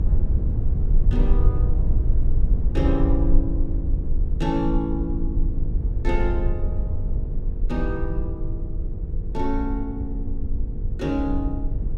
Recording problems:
mains hum; 50 Hz, harmonics up to 500 Hz, SNR 13 dB
rumble; below 62 Hz, SNR -3 dB

